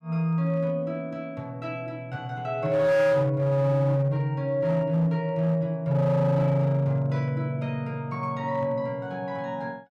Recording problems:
distortion; hard clipping, signal-to-distortion ratio 12 dB

